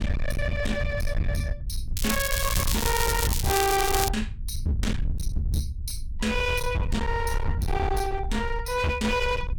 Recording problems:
distorted audio; hard clipping, uneven, signal-to-distortion ratio 6 dB
low-frequency rumble; below 94 Hz, SNR 4 dB
crackling; from 2 to 4 s; loose cable, SNR 1 dB

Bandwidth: 17.5 kHz